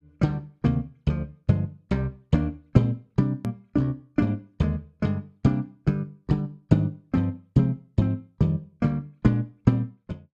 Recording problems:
hard cut with a click; at 3.5 s

